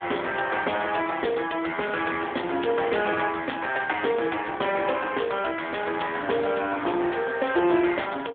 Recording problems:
phone line; 280 Hz to 3.4 kHz, AMR-NB

